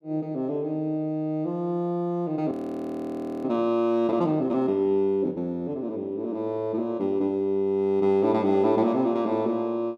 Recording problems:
audio freezing; at 2.5 s for 1 s

